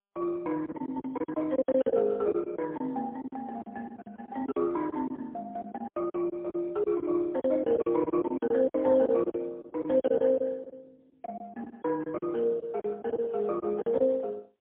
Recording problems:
phone line; 280 Hz to 2.9 kHz, AMR-NB, then MP3
packet loss; 15% of the sound replaced, filled with silence

